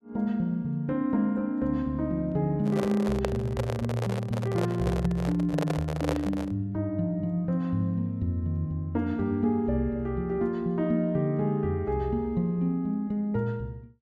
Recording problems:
handling noise; from 2.5 to 6.5 s; peak +3 dB vs average level

